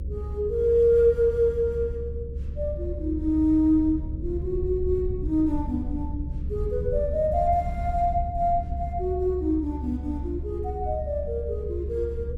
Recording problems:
hum; 50 Hz, harmonics up to 550 Hz, SNR 18 dB
low-frequency rumble; below 76 Hz, strongest tone 70 Hz, SNR 8 dB

